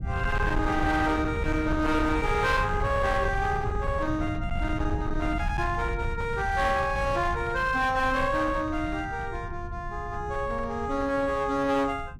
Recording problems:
distortion; hard clipping, uneven, signal-to-distortion ratio 10 dB
low-frequency rumble; below 120 Hz, SNR 7 dB

